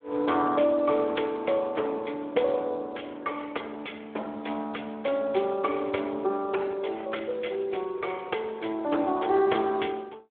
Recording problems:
phone line; 300 Hz to 3.4 kHz, Speex

